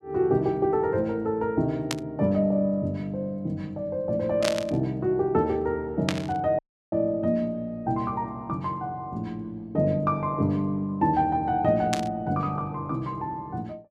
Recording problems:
static burst; 4 times, first at 2 s; peak +3 dB vs average level
audio cutting out; at 6.5 s

